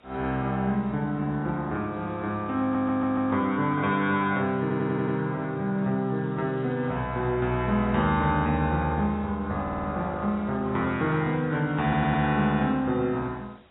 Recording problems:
lossy compression; AAC, log-spectral distance 5 dB, nothing above 3.2 kHz
hiss; SNR 28 dB
stutter; 4 times, first at 2.5 s

